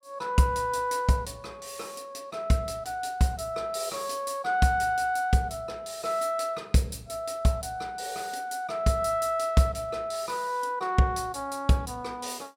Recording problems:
none

